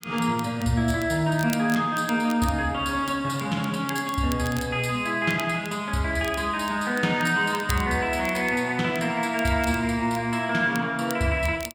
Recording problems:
crackle; vinyl, SNR 18 dB

